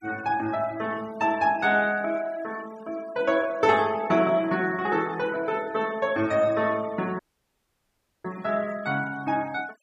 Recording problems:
denoising artefacts; signal-to-artefact ratio 22 dB
dropout; at 7 s for 1 s

